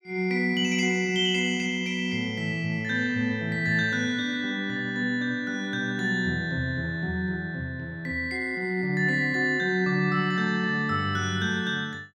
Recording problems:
none

